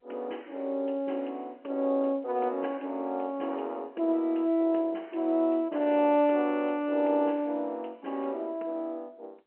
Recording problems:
phone line; 260 Hz to 3.2 kHz, G.711

